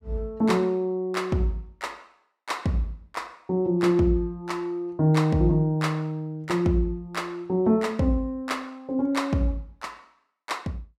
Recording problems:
none

